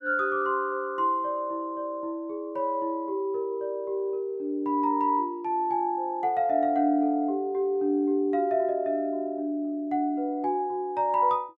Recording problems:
none

